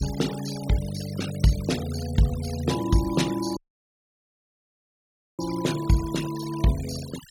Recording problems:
noise reduction artefacts; signal-to-artefact ratio 13 dB
dropout; at 3.5 s for 2 s

